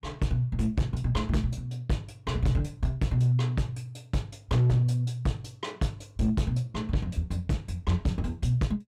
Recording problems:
distortion; hard clipping, signal-to-distortion ratio 10 dB

